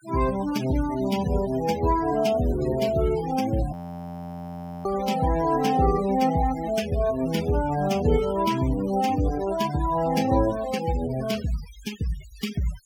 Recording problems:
noise reduction artefacts; signal-to-artefact ratio 15 dB
frozen audio; at 3.5 s for 1 s

